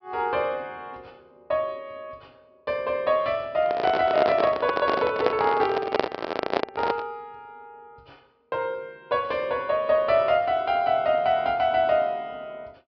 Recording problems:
treble cut off; nothing above 5.5 kHz
microphone handling noise; from 3.5 to 7 s; peak +5 dB vs average level

